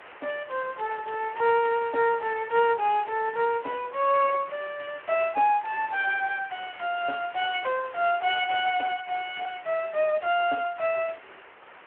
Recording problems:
phone line; 320 Hz to 3.1 kHz, Speex
background hiss; SNR 21 dB

